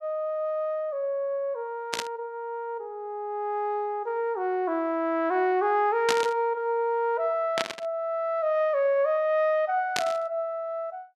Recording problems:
static burst; 4 times, first at 2 s; peak +4 dB vs average level

